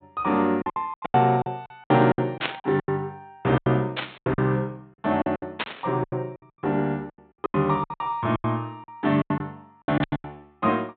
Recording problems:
low-pass filter; nothing above 4 kHz
lost packets; 19% of the sound replaced, filled with silence
static burst; 4 times, first at 2.5 s; peak +4 dB vs average level

